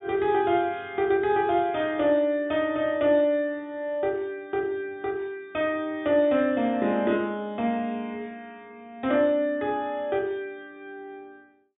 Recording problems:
treble missing; nothing above 4 kHz

